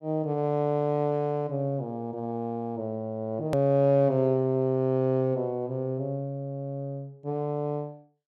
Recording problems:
edit click; at 3.5 s

